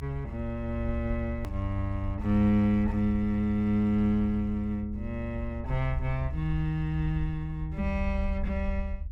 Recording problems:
low-frequency rumble; below 70 Hz, SNR 7 dB
click at an edit; at 1.5 s

